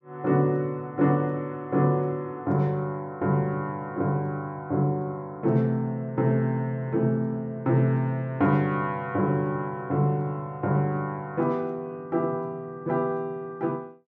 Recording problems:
none

